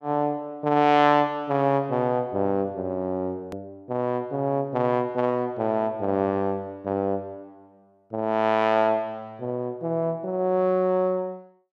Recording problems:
edit click; at 3.5 s

